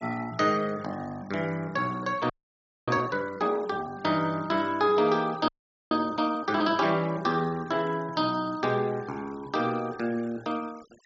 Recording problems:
low-pass filter; nothing above 8 kHz
noise reduction artefacts; signal-to-artefact ratio 23 dB
audio freezing; at 2.5 s for 0.5 s and at 5.5 s

